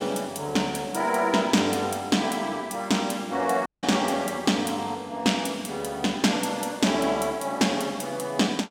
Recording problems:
audio cutting out; at 3.5 s

